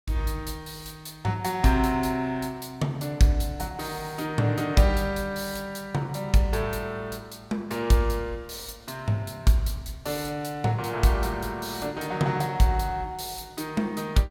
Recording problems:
none

